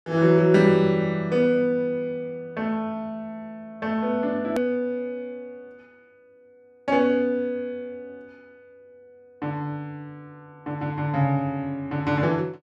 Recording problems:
click at an edit; at 4.5 s

